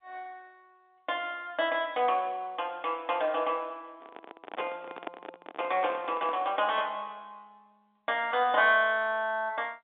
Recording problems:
telephone audio; 240 Hz to 3.6 kHz, G.711
handling noise; from 4 to 6.5 s; peak -4 dB vs average level

